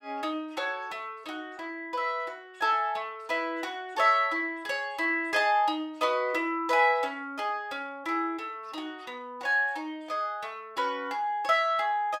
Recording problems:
none

